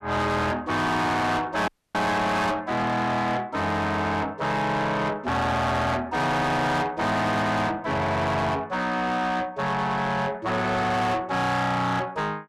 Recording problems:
distortion; soft clipping, signal-to-distortion ratio 8 dB
dropout; at 1.5 s

